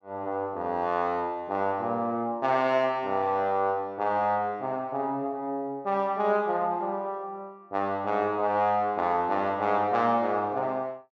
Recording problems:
none

